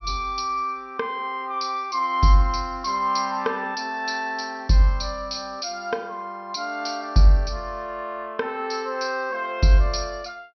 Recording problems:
treble cut off; nothing above 6 kHz

